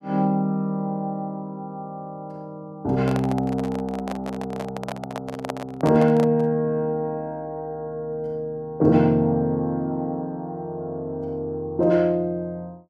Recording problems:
handling noise; from 3 to 6.5 s; peak -1 dB vs average level

